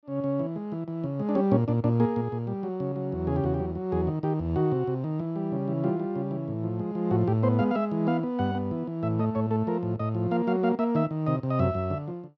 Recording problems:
none

